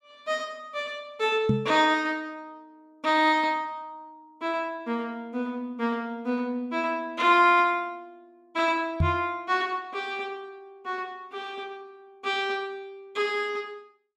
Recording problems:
microphone thump; at 1.5 s and at 9 s; peak +6 dB vs average level

